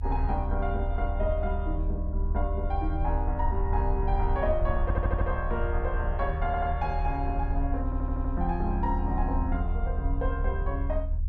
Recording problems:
low-frequency rumble; below 74 Hz, strongest tone 32 Hz, SNR -1 dB
audio stuttering; at 5 s, at 6.5 s and at 8 s

